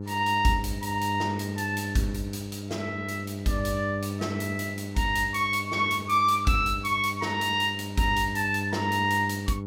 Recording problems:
hum; 50 Hz, harmonics up to 600 Hz, SNR 8 dB

